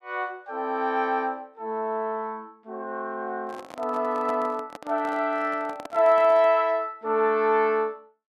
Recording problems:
microphone handling noise; from 3.5 to 6.5 s; peak -9 dB vs average level

